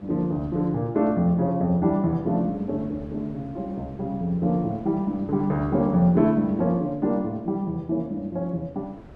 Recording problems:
wind noise; below 450 Hz, SNR 22 dB

